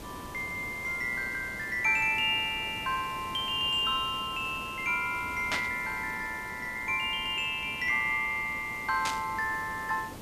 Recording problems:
background hiss; slope -5 dB per octave, SNR 15 dB
static burst; at 5.5 s and at 9 s; peak +1 dB vs average level

